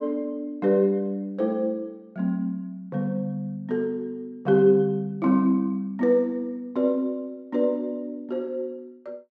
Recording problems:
none

